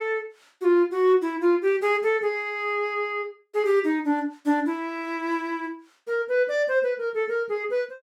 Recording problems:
none

